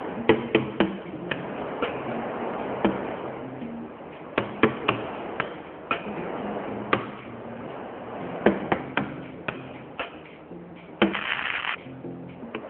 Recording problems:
telephone audio; 260 Hz to 3.3 kHz, AMR-NB
wind on the microphone; below 1 kHz, SNR 7 dB
crackling; at 11 s; loose cable, SNR 0 dB

